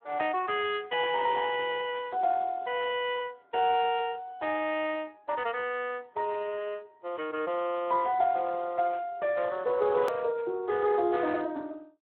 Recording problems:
phone line; 260 Hz to 3.3 kHz, Speex
hard cut with a click; at 10 s

